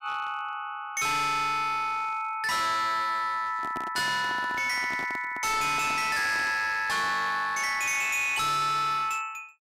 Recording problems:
distortion; hard clipping, signal-to-distortion ratio 8 dB
handling noise; from 3.5 to 6.5 s; peak -4 dB vs average level

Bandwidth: 15.5 kHz